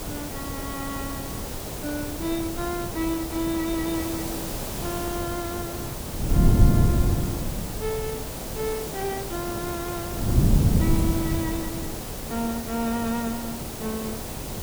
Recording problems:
background hiss; SNR 2 dB
wind on the microphone; below 190 Hz, SNR -3 dB

